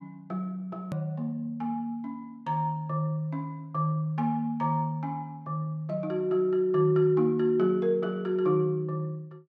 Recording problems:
edit click; at 1 s

